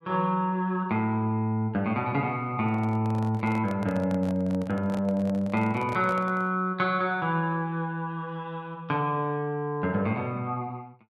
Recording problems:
handling noise; from 2.5 to 6.5 s; peak -7 dB vs average level

